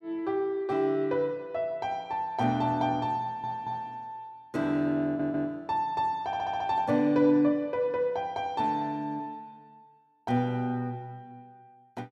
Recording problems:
stutter; at 3 s, at 5 s and at 6.5 s

